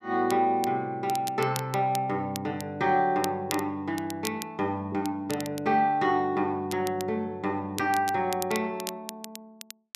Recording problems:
crackle; vinyl, SNR 13 dB

